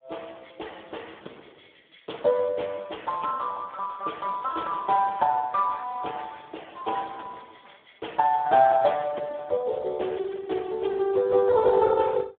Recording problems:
telephone audio; 300 Hz to 3.4 kHz, Speex

